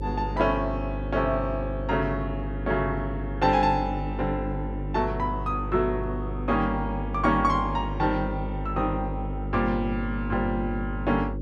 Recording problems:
hum; 50 Hz, harmonics up to 550 Hz, SNR 5 dB

